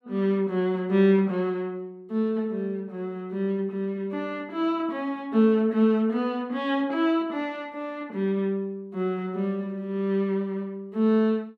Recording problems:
none

